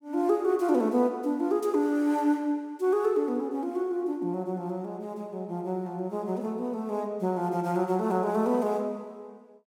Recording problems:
none

